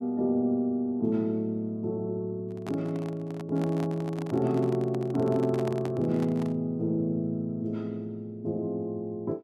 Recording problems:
microphone handling noise; from 2.5 to 6.5 s; peak -4 dB vs average level

